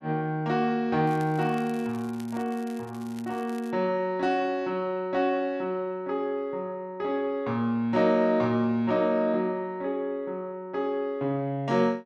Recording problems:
crackle; from 1 to 3.5 s; loose cable, SNR 24 dB

